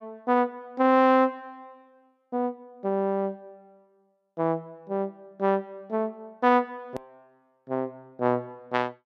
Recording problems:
hard cut with a click; at 7 s

